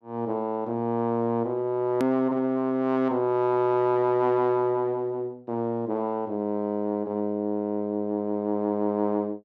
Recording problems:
edit click; at 2 s

